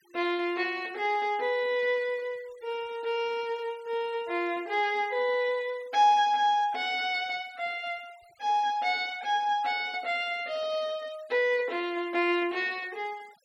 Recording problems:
noise reduction artefacts; signal-to-artefact ratio 26 dB

